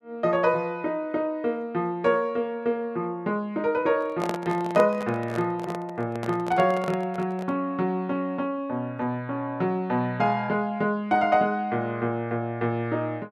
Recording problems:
microphone handling noise; from 4 to 7.5 s; peak +1 dB vs average level

